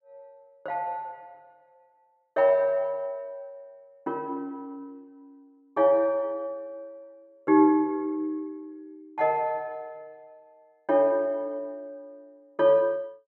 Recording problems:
none

